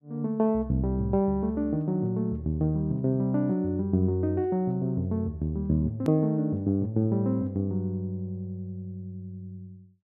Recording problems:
hard cut with a click; at 6 s

